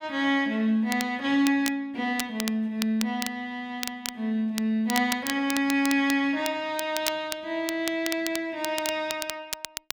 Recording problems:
crackling; vinyl, SNR 8 dB

